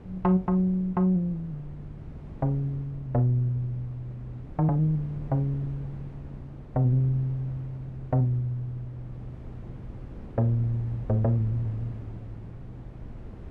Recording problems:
wind on the microphone; below 210 Hz, SNR 16 dB

